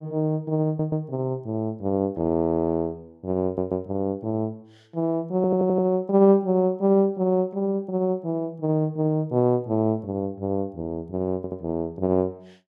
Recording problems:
audio stuttering; 4 times, first at 0.5 s

